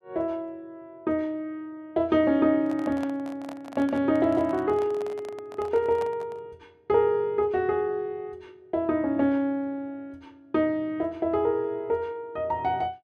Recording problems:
handling noise; from 2.5 to 6.5 s; peak -8 dB vs average level

